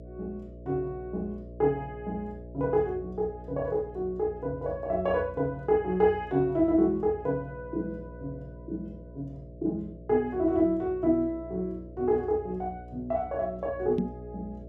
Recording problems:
hum; 60 Hz, harmonics up to 660 Hz, SNR 16 dB
microphone thump; at 14 s; peak +3 dB vs average level

